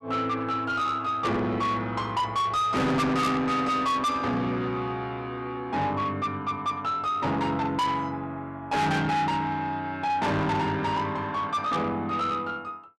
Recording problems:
distortion; soft clipping, signal-to-distortion ratio 6 dB

